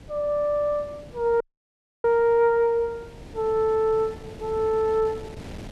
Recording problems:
wind on the microphone; below 500 Hz, SNR 20 dB
audio cutting out; at 1.5 s for 0.5 s

